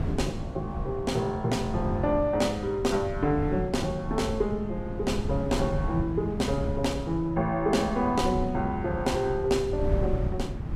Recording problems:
wind noise; below 170 Hz, SNR 6 dB

